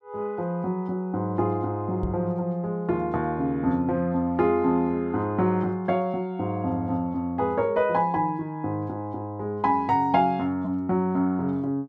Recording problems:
microphone bump; at 2 s; peak -1 dB vs average level

